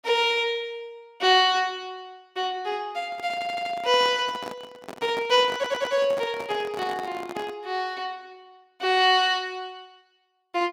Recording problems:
microphone handling noise; from 3 to 7.5 s; peak -8 dB vs average level
audio stuttering; at 3.5 s and at 5.5 s

